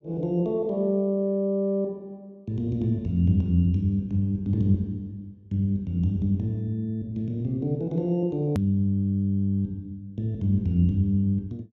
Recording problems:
hard cut with a click; at 8.5 s

